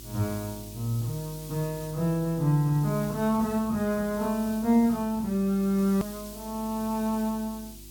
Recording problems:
hum; 50 Hz, harmonics up to 350 Hz, SNR 21 dB
background hiss; SNR 17 dB
click at an edit; at 6 s

